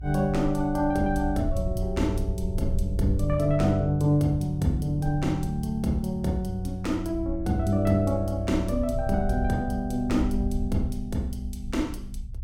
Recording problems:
low-frequency rumble; below 64 Hz, SNR 8 dB

